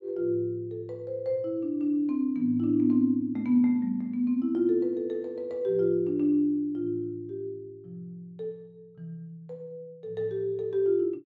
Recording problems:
none

